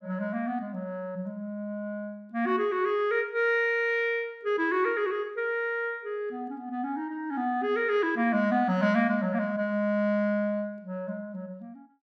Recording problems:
none

